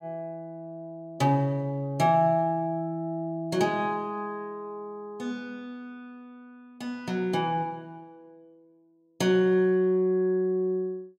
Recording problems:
none

